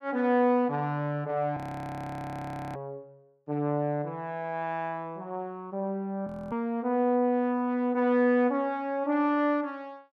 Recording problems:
audio freezing; at 1.5 s for 1 s and at 6.5 s

